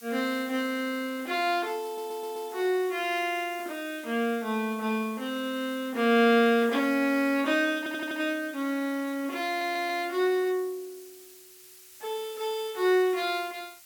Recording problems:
hiss; slope +4 dB per octave, SNR 20 dB
stutter; at 2 s, at 8 s and at 9.5 s

